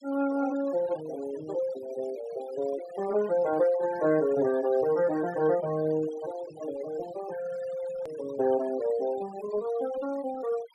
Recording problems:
denoising artefacts; signal-to-artefact ratio 17 dB
click at an edit; at 8 s

